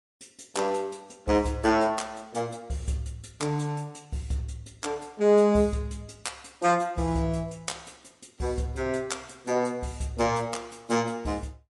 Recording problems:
codec artefacts; MP3, log-spectral distance 4 dB, nothing above 11 kHz

